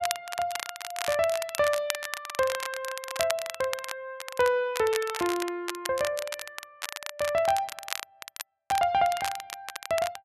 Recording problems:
crackling; vinyl, SNR 7 dB

